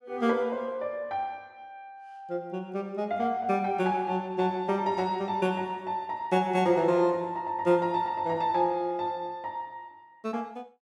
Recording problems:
none

